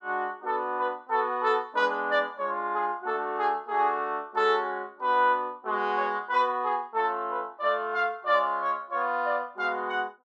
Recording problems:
none

